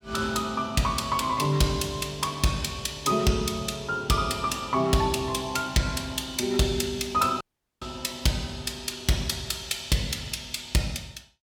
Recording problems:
distorted audio; hard clipping, signal-to-distortion ratio 11 dB
dropout; at 7.5 s

